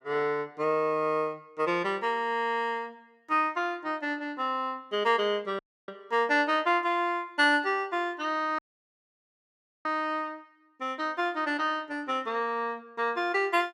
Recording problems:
audio cutting out; at 5.5 s and at 8.5 s for 1.5 s

